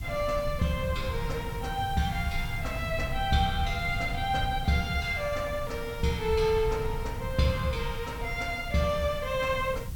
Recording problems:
hiss; slope 0 dB per octave, SNR 20 dB
rumble; below 120 Hz, SNR 8 dB

